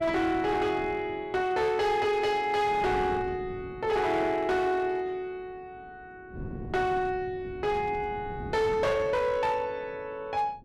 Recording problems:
distortion; hard clipping, signal-to-distortion ratio 11 dB
wind on the microphone; below 280 Hz, SNR 15 dB

